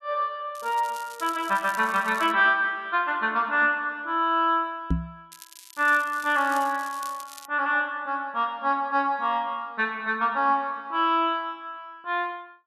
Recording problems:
crackling; from 0.5 to 2.5 s and from 5.5 to 7.5 s; loose cable, SNR 19 dB
knock on the microphone; at 5 s; peak +3 dB vs average level

